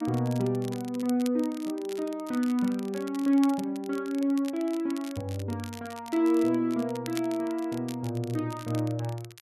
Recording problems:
crackling; vinyl, SNR 18 dB

